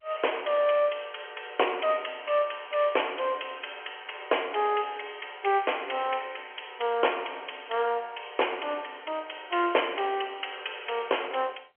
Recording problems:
telephone audio; 320 Hz to 3.3 kHz, G.711

